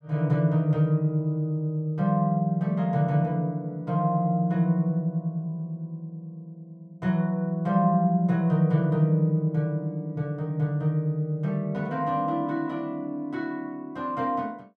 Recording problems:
none

